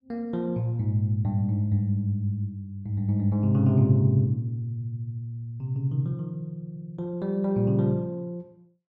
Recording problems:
none

